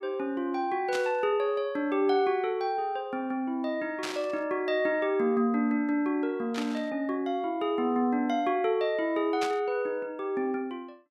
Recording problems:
static burst; 4 times, first at 1 s; peak -2 dB vs average level

